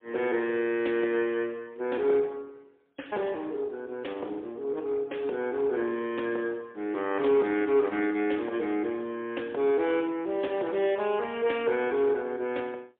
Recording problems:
phone line; 280 Hz to 3.5 kHz, AMR-NB, then MP3

